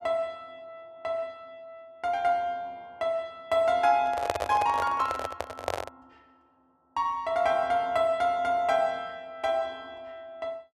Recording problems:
handling noise; from 4 to 6 s; peak +4 dB vs average level

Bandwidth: 13 kHz